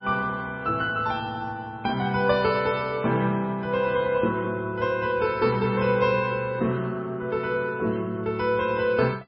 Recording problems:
lossy codec; MP3, log-spectral distance 2 dB, nothing above 4.5 kHz

